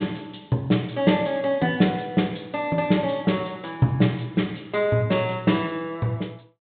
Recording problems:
treble cut off; nothing above 4 kHz

